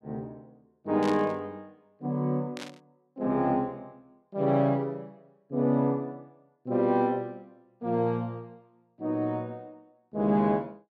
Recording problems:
static burst; at 1 s and at 2.5 s; peak -6 dB vs average level

